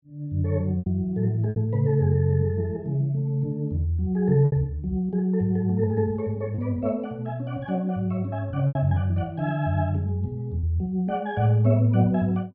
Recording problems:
packet loss; 3% of the sound replaced, filled with repeated pitch periods

